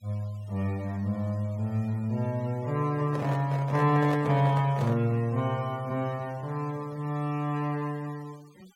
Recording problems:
noise reduction artefacts; signal-to-artefact ratio 25 dB
microphone handling noise; from 3 to 5 s; peak -4 dB vs average level

